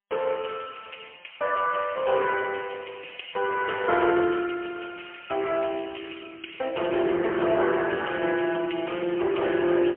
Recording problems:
telephone audio; 240 Hz to 3.1 kHz, AMR-NB, then MP3

